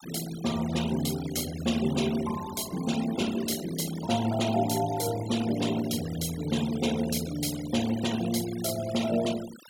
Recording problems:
noise reduction artefacts; signal-to-artefact ratio 12 dB

